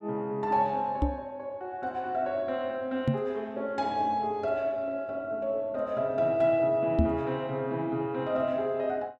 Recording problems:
microphone thump; at 1 s, at 3 s and at 7 s; peak +7 dB vs average level

